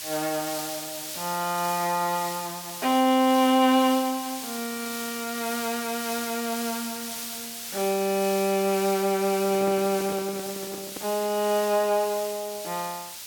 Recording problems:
background hiss; slope +3 dB per octave, SNR 8 dB
microphone handling noise; from 9.5 to 11 s; peak -8 dB vs average level

